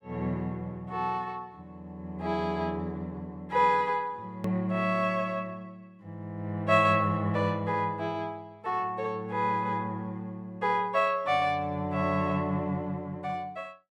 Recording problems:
click at an edit; at 4.5 s

